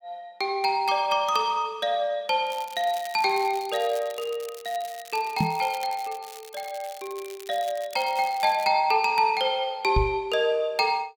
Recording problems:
crackle; from 2.5 to 8.5 s; loose cable, SNR 19 dB
knock on the microphone; at 5.5 s and at 10 s; peak +4 dB vs average level

